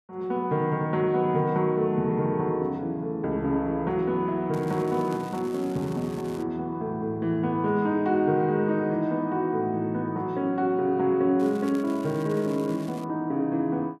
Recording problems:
crackle; from 4.5 to 6.5 s and from 11 to 13 s; loose cable, SNR 23 dB

